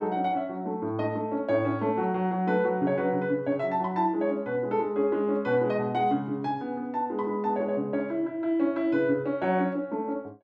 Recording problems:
none

